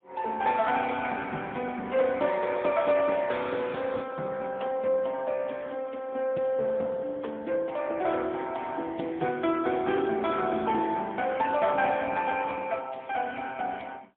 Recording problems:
telephone audio; 240 Hz to 3.5 kHz, AMR-NB, then MP3

